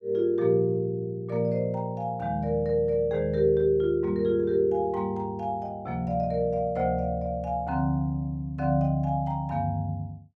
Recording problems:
none

